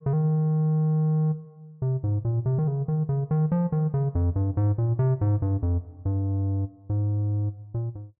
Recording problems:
none

